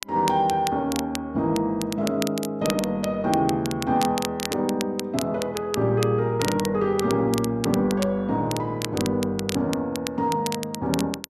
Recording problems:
crackle; vinyl, SNR 10 dB

